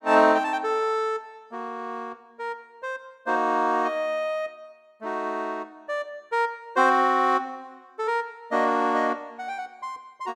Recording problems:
none

